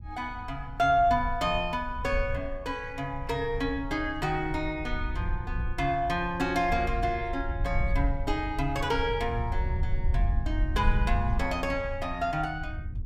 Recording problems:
rumble; below 80 Hz, SNR 5 dB

